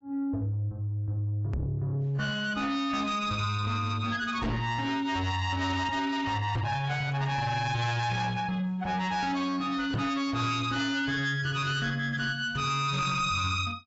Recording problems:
lossy compression; AAC, log-spectral distance 3 dB, nothing above 7.6 kHz
distortion; soft clipping, signal-to-distortion ratio 8 dB
microphone thump; 4 times, first at 1.5 s; peak +2 dB vs average level

